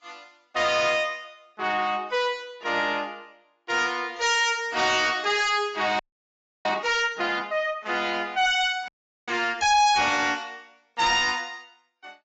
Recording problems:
lossy codec; AAC, log-spectral distance 3 dB, nothing above 7.6 kHz
distorted audio; soft clipping, signal-to-distortion ratio 7 dB
frozen audio; at 6 s for 0.5 s and at 9 s

